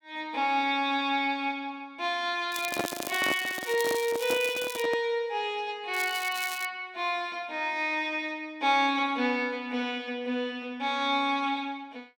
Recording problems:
crackling; from 2.5 to 5 s and at 6 s; loose cable, SNR 10 dB
microphone handling noise; from 2.5 to 5 s; peak +2 dB vs average level

